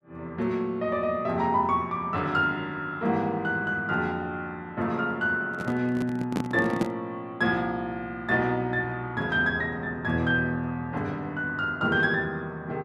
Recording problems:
microphone handling noise; from 5.5 to 7 s; peak +3 dB vs average level

